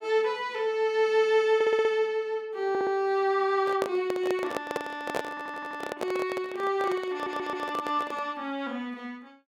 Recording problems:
stutter; 4 times, first at 1.5 s
microphone handling noise; from 3.5 to 8.5 s; peak +2 dB vs average level

